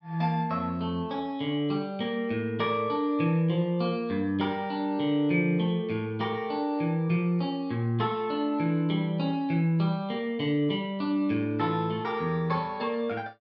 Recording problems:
none

